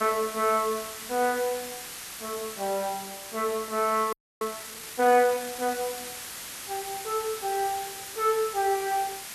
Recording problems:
hiss; slope +1 dB per octave, SNR 9 dB
audio freezing; at 4 s

